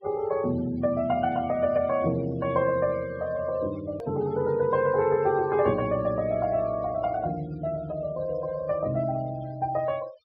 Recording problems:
treble missing; nothing above 5.5 kHz
denoising artefacts; signal-to-artefact ratio 22 dB
click at an edit; at 4 s

